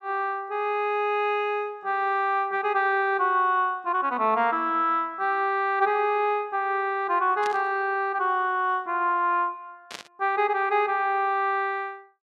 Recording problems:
burst of static; at 7.5 s and at 10 s; peak -7 dB vs average level

